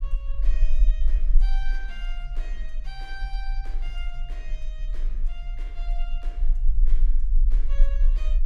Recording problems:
low-frequency rumble; below 36 Hz, strongest tone 18 Hz, SNR -17 dB

